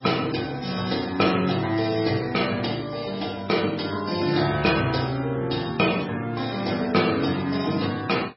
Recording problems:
lossy compression; MP3, log-spectral distance 9 dB, nothing above 5.5 kHz

